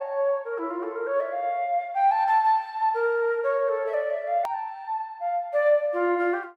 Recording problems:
hard cut with a click; at 4.5 s

